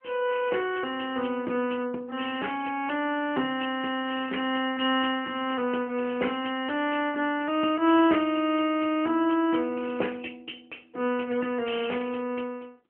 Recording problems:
telephone audio; 260 Hz to 3.1 kHz, AMR-NB

